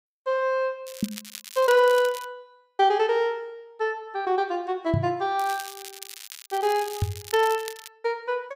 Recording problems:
crackling; from 1 to 2 s and from 5.5 to 8 s; loose cable, SNR 14 dB
microphone thump; at 1 s, at 5 s and at 7 s; peak +3 dB vs average level

